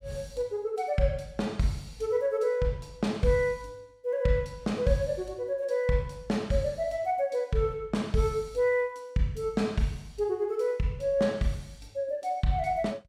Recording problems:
none

